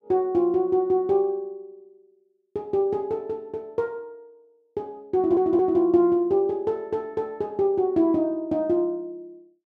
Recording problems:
audio stuttering; at 5 s

